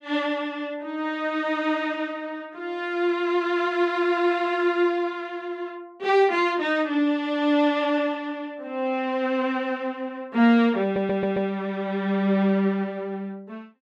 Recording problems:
audio stuttering; at 11 s

